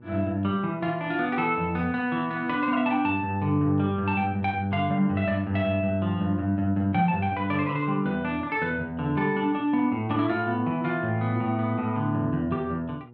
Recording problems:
hum; 60 Hz, harmonics up to 960 Hz, SNR 24 dB

